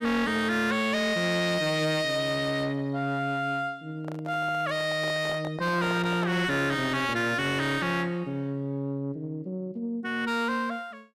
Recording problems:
distortion; soft clipping, signal-to-distortion ratio 9 dB
handling noise; from 4 to 6.5 s; peak -7 dB vs average level

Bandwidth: 14.5 kHz